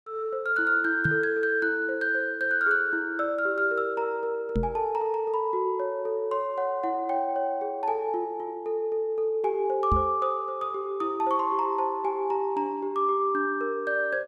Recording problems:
microphone thump; at 1 s, at 4.5 s and at 10 s; peak +2 dB vs average level

